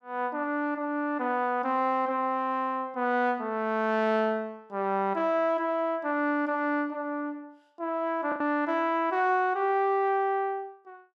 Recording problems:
lost packets; 0.8% of the sound replaced, filled with the last packet

